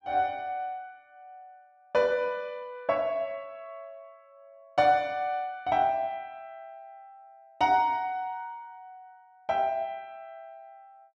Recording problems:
none

